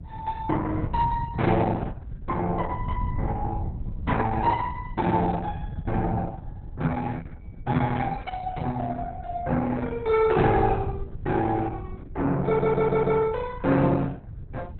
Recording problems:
lossy compression; Opus, log-spectral distance 3 dB, nothing above 4 kHz
wind on the microphone; below 130 Hz, SNR 11 dB
stutter; at 12 s

